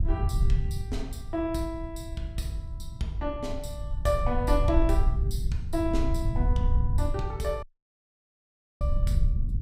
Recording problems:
rumble; below 76 Hz, SNR -2 dB
audio cutting out; at 7.5 s for 1 s

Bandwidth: 15.5 kHz